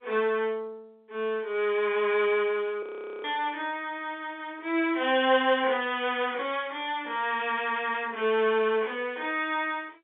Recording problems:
telephone audio; 280 Hz to 3.6 kHz, G.711
frozen audio; at 3 s

